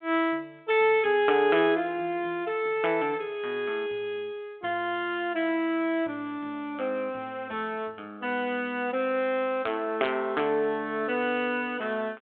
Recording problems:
telephone audio; 260 Hz to 3.5 kHz, G.726

